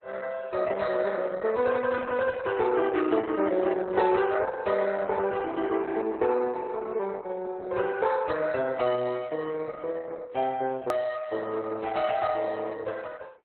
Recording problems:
lossy compression; MP3, then Opus, log-spectral distance 3 dB, nothing above 14.1 kHz
edit click; at 11 s

